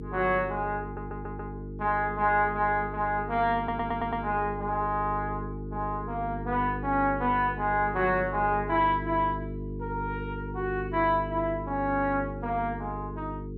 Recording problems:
hum; 50 Hz, harmonics up to 450 Hz, SNR 9 dB
audio stuttering; at 1 s and at 3.5 s

